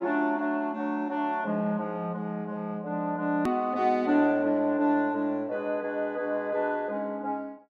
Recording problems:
edit click; at 3.5 s

